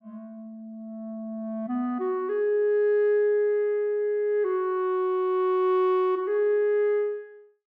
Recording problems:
none

